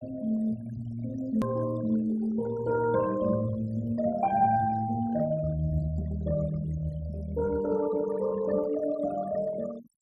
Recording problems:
denoising artefacts; signal-to-artefact ratio 17 dB
hard cut with a click; at 1.5 s

